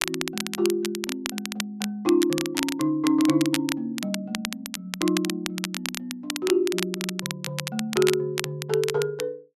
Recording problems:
crackling; vinyl, SNR 6 dB

